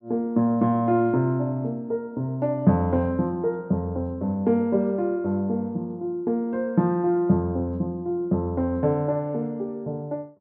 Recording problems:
none

